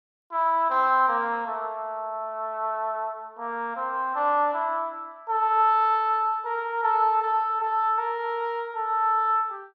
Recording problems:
none

